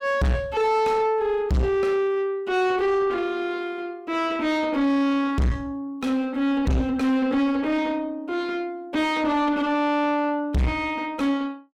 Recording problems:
distortion; soft clipping, signal-to-distortion ratio 5 dB

